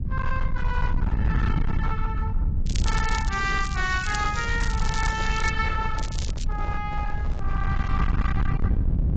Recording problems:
lossy compression; AAC, log-spectral distance 3 dB
distortion; hard clipping, signal-to-distortion ratio 7 dB
low-frequency rumble; below 98 Hz, SNR -2 dB
crackle; from 2.5 to 5.5 s and at 6 s; loose cable, SNR 8 dB
microphone handling noise; from 4 to 8 s; peak -7 dB vs average level

